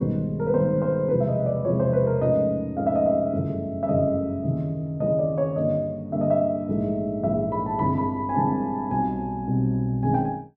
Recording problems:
none

